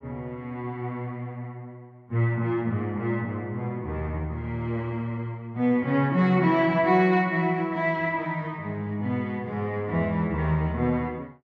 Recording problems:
none

